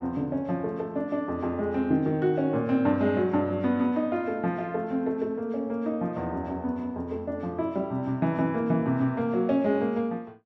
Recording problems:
none

